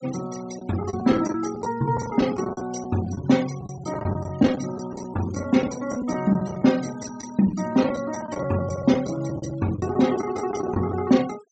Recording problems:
low-pass filter; nothing above 8 kHz
denoising artefacts; signal-to-artefact ratio 18 dB
lost packets; 12% of the sound replaced, filled with the last packet

